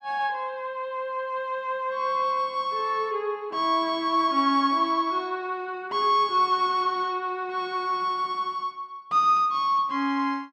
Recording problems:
none

